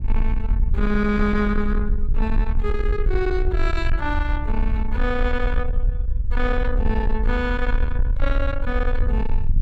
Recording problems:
distorted audio; soft clipping, signal-to-distortion ratio 11 dB
low-frequency rumble; below 54 Hz, strongest tone 24 Hz, SNR -1 dB

